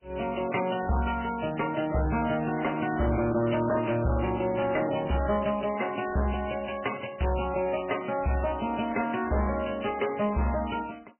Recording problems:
lossy compression; Vorbis, then MP3, log-spectral distance 9 dB, nothing above 3 kHz
distorted audio; hard clipping, uneven, signal-to-distortion ratio 11 dB

